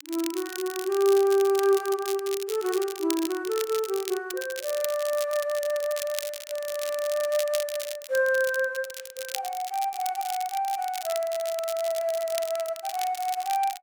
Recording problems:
crackle; vinyl, SNR 10 dB

